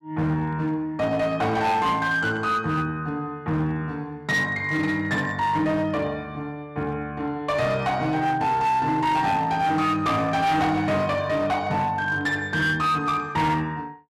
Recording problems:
distorted audio; hard clipping, uneven, signal-to-distortion ratio 11 dB

